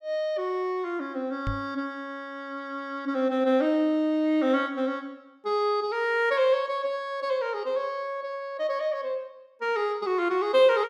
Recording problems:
microphone bump; at 1.5 s; peak -1 dB vs average level

